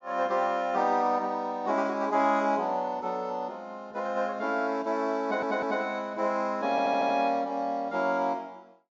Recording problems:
low-pass filter; nothing above 7.3 kHz
stutter; at 5 s and at 6.5 s

